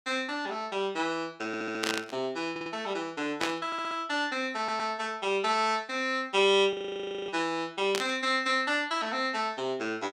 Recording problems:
audio stuttering; 4 times, first at 1.5 s
burst of static; at 2 s, at 3.5 s and at 8 s; peak +4 dB vs average level
frozen audio; at 6.5 s for 0.5 s

